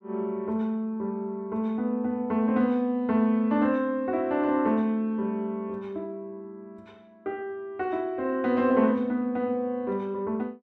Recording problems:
none

